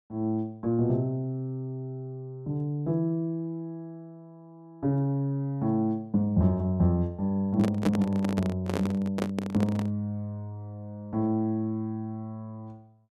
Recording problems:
microphone handling noise; from 7.5 to 10 s; peak +3 dB vs average level

